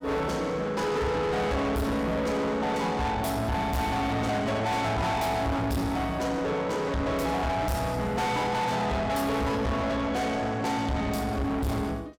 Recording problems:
distorted audio; soft clipping, signal-to-distortion ratio 7 dB

